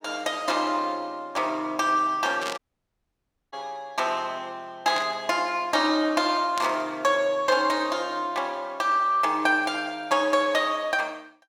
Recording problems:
static burst; at 2.5 s, at 5 s and at 6.5 s; peak -4 dB vs average level
dropout; at 2.5 s for 1 s

